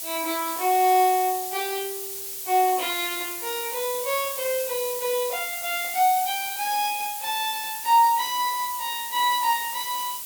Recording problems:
background hiss; SNR 6 dB

